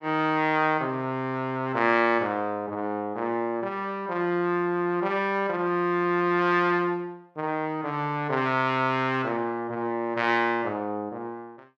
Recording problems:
none

